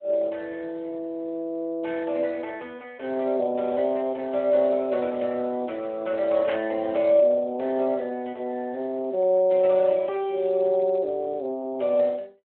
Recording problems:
phone line; 220 Hz to 3.9 kHz, Speex
burst of static; at 6.5 s; peak -5 dB vs average level

